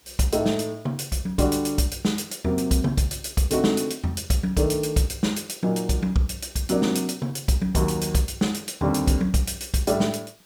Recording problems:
hiss; slope -1 dB per octave, SNR 30 dB

